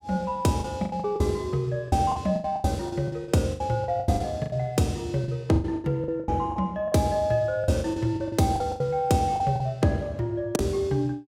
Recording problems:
packet loss; 15% of the sound replaced, filled with the last packet

